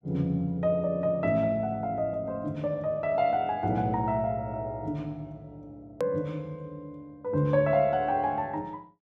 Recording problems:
edit click; at 6 s

